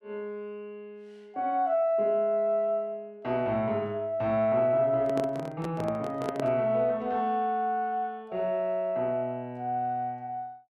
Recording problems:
handling noise; from 5 to 6.5 s; peak -2 dB vs average level

